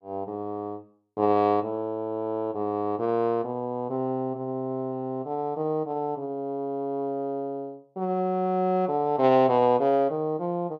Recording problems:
none

